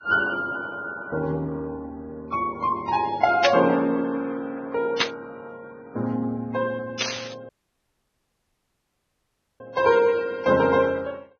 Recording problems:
codec artefacts; Vorbis, then Vorbis, log-spectral distance 3 dB, nothing above 6 kHz
burst of static; at 3.5 s, at 5 s and at 7 s; peak +6 dB vs average level
dropout; at 7.5 s for 2 s

